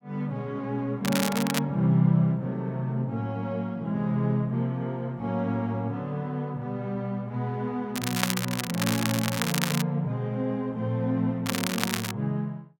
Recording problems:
crackling; at 1 s, from 8 to 10 s and at 11 s; loose cable, SNR 3 dB

